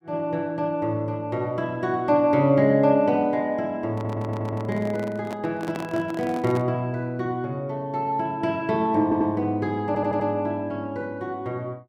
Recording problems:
microphone handling noise; from 4 to 6.5 s; peak -6 dB vs average level
audio stuttering; at 4 s, at 9 s and at 10 s

